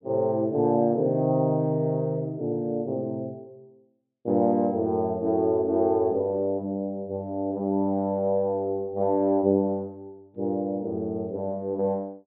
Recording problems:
low-pass filter; nothing above 4 kHz

